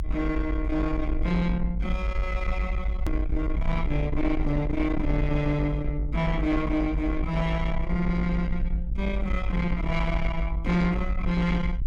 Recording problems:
distortion; soft clipping, signal-to-distortion ratio 11 dB
rumble; below 56 Hz, SNR 3 dB
click at an edit; at 3 s

